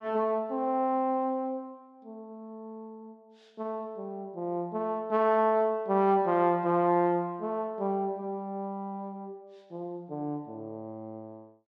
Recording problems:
none

